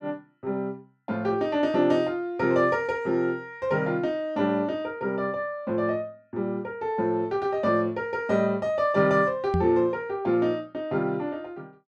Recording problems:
microphone thump; at 9.5 s; peak +3 dB vs average level

